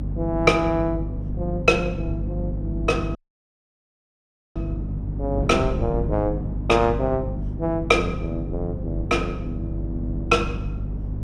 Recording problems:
electrical hum; 50 Hz, harmonics up to 300 Hz, SNR 6 dB
wind on the microphone; below 230 Hz, SNR 10 dB
audio cutting out; at 3 s for 1.5 s

